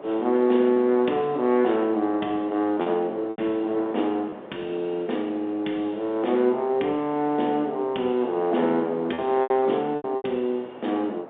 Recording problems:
telephone audio; 220 Hz to 3.6 kHz, G.711
wind on the microphone; below 830 Hz, SNR 18 dB
lost packets; 4% of the sound replaced, filled with repeated pitch periods

